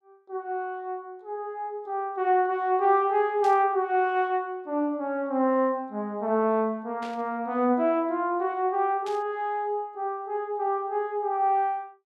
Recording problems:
static burst; at 3.5 s, at 7 s and at 9 s; peak -13 dB vs average level

